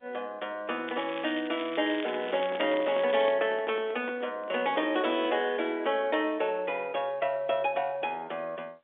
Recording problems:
telephone audio; 340 Hz to 3.6 kHz, G.711
crackling; from 1 to 3.5 s; loose cable, SNR 13 dB
handling noise; from 2 to 5.5 s; peak -6 dB vs average level

